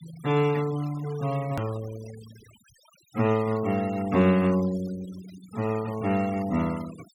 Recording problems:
noise reduction artefacts; signal-to-artefact ratio 19 dB
hard cut with a click; at 1.5 s

